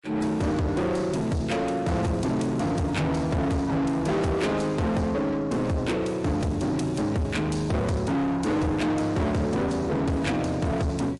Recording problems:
lossy compression; MP3, log-spectral distance 2 dB, nothing above 11 kHz
distortion; soft clipping, signal-to-distortion ratio 7 dB

